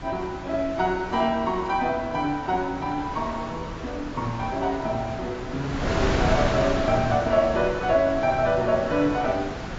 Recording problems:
codec artefacts; AAC, log-spectral distance 3 dB, nothing above 7.3 kHz
wind on the microphone; below 1.2 kHz, SNR 6 dB

